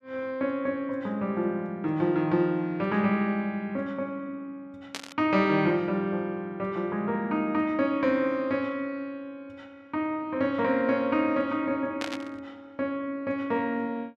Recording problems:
static burst; at 5 s and at 12 s; peak -2 dB vs average level

